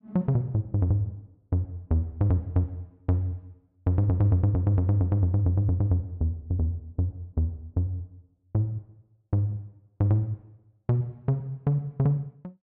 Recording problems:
none

